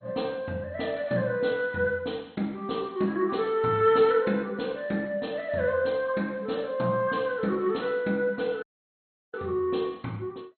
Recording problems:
codec artefacts; MP2, log-spectral distance 3 dB, nothing above 4.2 kHz
audio cutting out; at 8.5 s for 0.5 s

